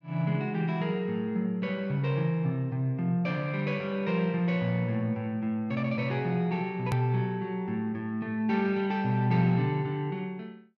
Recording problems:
click at an edit; at 7 s

